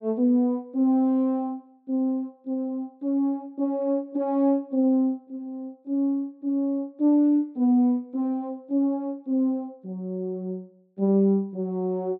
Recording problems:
none

